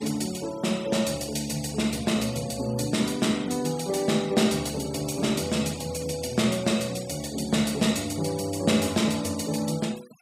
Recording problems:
noise reduction artefacts; signal-to-artefact ratio 17 dB

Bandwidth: 15.5 kHz